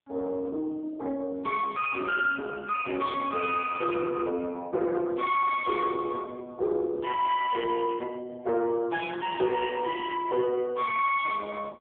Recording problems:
telephone audio; 280 Hz to 2.5 kHz, AMR-NB
distortion; soft clipping, signal-to-distortion ratio 9 dB

